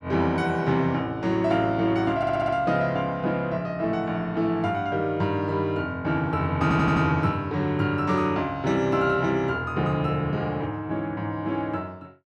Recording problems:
stutter; at 2 s and at 6.5 s

